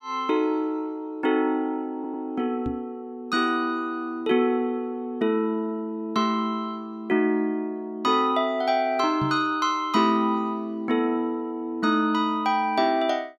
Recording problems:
audio stuttering; at 2 s
knock on the microphone; at 2.5 s and at 9 s; peak -2 dB vs average level

